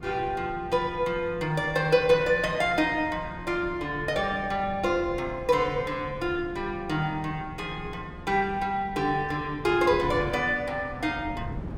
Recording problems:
wind on the microphone; below 230 Hz, SNR 15 dB

